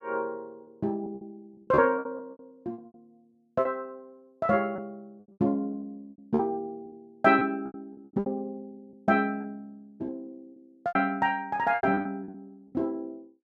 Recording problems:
packet loss; 13% of the sound replaced, filled with repeated pitch periods

